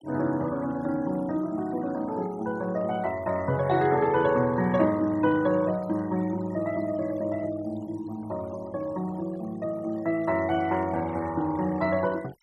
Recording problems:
noise reduction artefacts; signal-to-artefact ratio 20 dB

